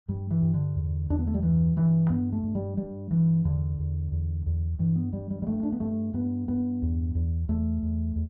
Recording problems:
none

